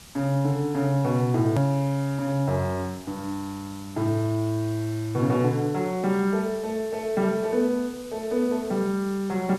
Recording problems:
background hiss; slope -1 dB per octave, SNR 20 dB
hard cut with a click; at 1.5 s

